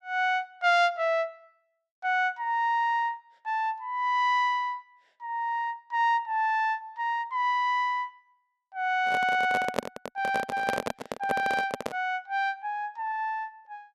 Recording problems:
microphone handling noise; from 9 to 12 s; peak +4 dB vs average level

